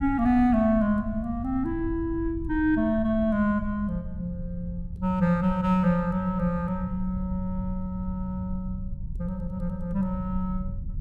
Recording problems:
low-frequency rumble; below 98 Hz, SNR 11 dB

